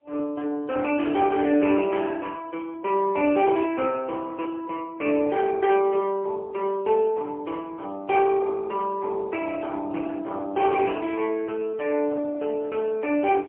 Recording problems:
telephone audio; 260 Hz to 3.1 kHz, AMR-NB, then MP3

